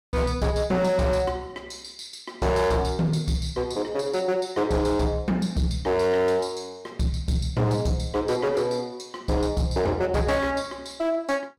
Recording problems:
distorted audio; hard clipping, signal-to-distortion ratio 10 dB

